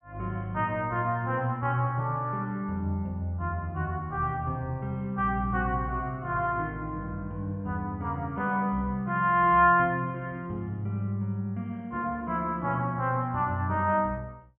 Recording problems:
low-pass filter; nothing above 3.2 kHz

